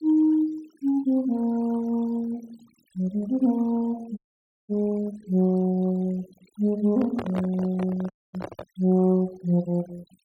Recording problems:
noise reduction artefacts; signal-to-artefact ratio 25 dB
audio cutting out; at 4 s for 0.5 s and at 8 s
microphone handling noise; from 7 to 8.5 s; peak -4 dB vs average level

